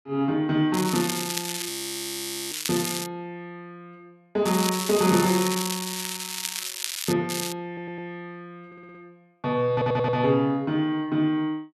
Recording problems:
crackling; from 0.5 to 3 s, from 4.5 to 7 s and at 7.5 s; loose cable, SNR 4 dB
audio freezing; at 1.5 s for 1 s
stutter; at 7.5 s, at 8.5 s and at 9.5 s

